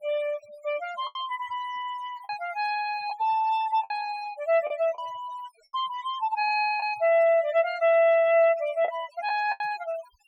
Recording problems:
denoising artefacts; signal-to-artefact ratio 20 dB
lost packets; 4% of the sound replaced, filled with the last packet

